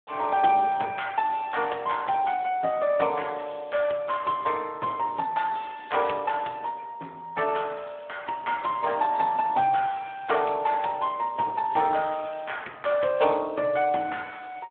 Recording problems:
telephone audio; 280 Hz to 3.4 kHz, Speex

